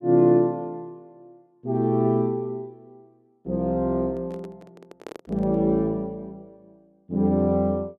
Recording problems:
microphone handling noise; from 4 to 5.5 s; peak -10 dB vs average level

